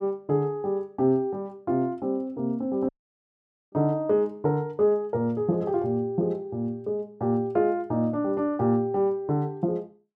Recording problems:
dropout; at 3 s for 1 s

